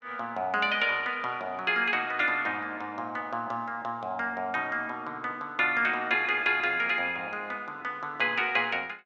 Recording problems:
none

